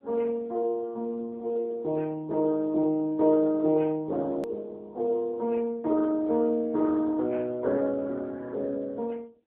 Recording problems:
phone line; 240 Hz to 2 kHz, AMR-NB
click at an edit; at 4.5 s

